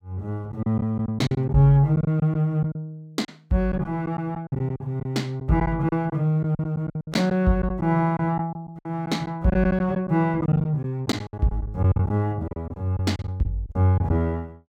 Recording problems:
packet loss; 12% of the sound replaced, filled with silence

